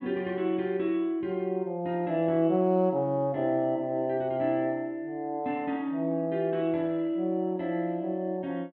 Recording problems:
none

